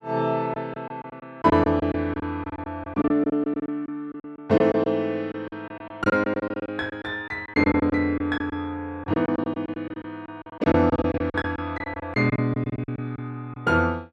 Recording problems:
packet loss; 15% of the sound replaced, filled with silence

